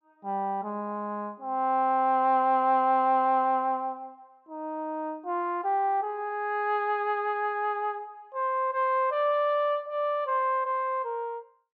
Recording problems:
treble missing; nothing above 8 kHz

